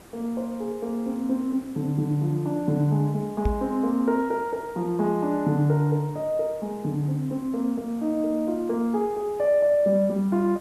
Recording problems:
hiss; slope -6 dB per octave, SNR 23 dB
microphone bump; at 3.5 s; peak +3 dB vs average level

